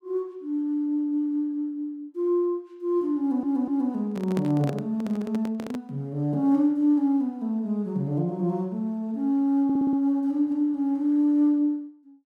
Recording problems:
audio stuttering; at 3 s and at 9.5 s
microphone handling noise; from 4 to 6 s; peak -3 dB vs average level

